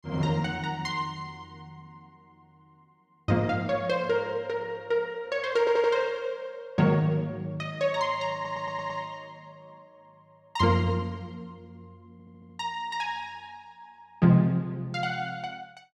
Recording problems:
audio stuttering; at 5.5 s, at 8.5 s and at 12 s

